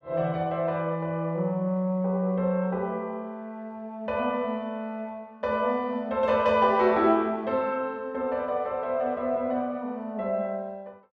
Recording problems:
none

